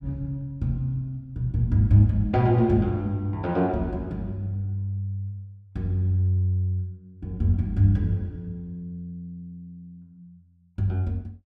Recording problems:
none

